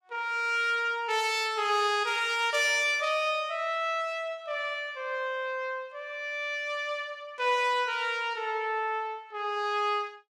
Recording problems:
none

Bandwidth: 16.5 kHz